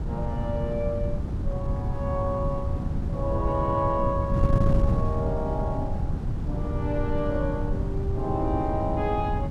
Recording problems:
wind noise; below 150 Hz, SNR -1 dB

